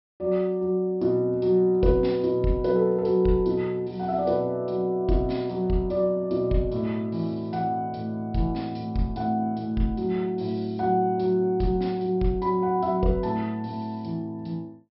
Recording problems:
low-pass filter; nothing above 5.4 kHz

